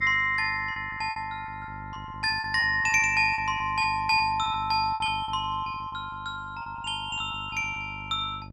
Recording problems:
mains hum; 50 Hz, harmonics up to 650 Hz, SNR 18 dB
packet loss; 12% of the sound replaced, filled with repeated pitch periods

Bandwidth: 13 kHz